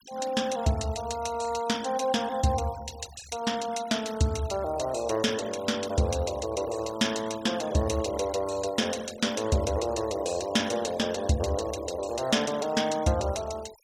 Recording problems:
denoising artefacts; signal-to-artefact ratio 17 dB

